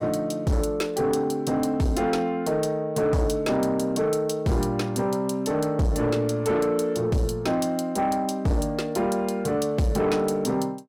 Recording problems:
distortion; soft clipping, signal-to-distortion ratio 10 dB

